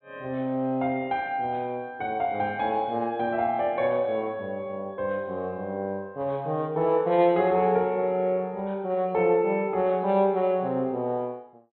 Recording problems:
treble missing; nothing above 4.2 kHz

